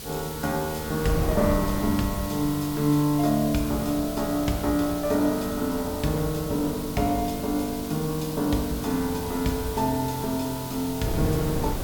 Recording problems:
hiss; slope +4 dB per octave, SNR 11 dB
wind noise; below 290 Hz, SNR 10 dB

